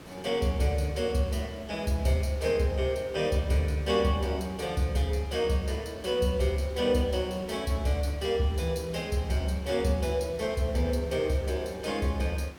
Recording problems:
hiss; slope -5 dB per octave, SNR 19 dB

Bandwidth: 17.5 kHz